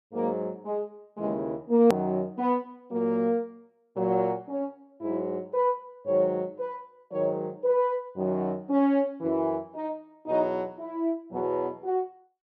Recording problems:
click at an edit; at 2 s

